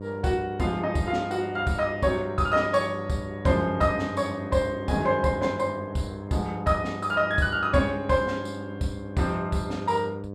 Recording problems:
hum; 50 Hz, harmonics up to 1 kHz, SNR 11 dB

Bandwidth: 14.5 kHz